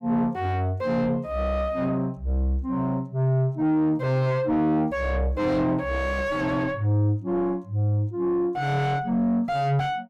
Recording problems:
distortion; soft clipping, signal-to-distortion ratio 7 dB

